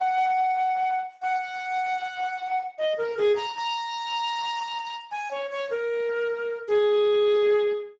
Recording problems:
lossy compression; Speex, log-spectral distance 3 dB

